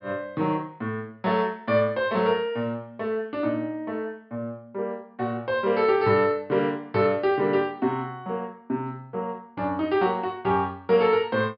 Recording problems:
low-pass filter; nothing above 5.5 kHz

